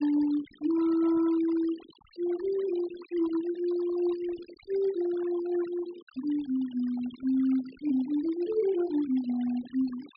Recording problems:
treble missing; nothing above 5.2 kHz
denoising artefacts; signal-to-artefact ratio 20 dB

